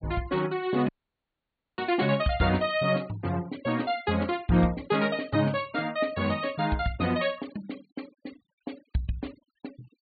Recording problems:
low-pass filter; nothing above 4.6 kHz
noise reduction artefacts; signal-to-artefact ratio 24 dB
audio cutting out; at 1 s for 1 s

